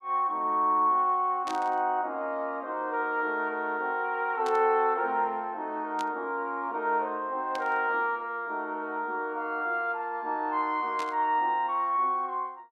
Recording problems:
static burst; 5 times, first at 1.5 s; peak -8 dB vs average level

